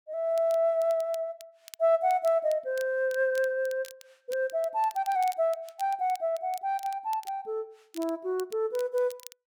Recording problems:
crackling; vinyl, SNR 22 dB

